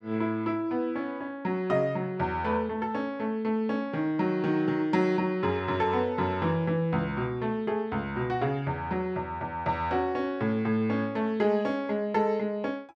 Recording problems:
none

